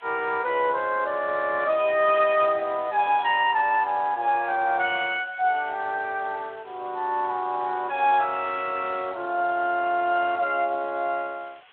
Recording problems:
telephone audio; 300 Hz to 3.7 kHz, Speex
hiss; SNR 27 dB

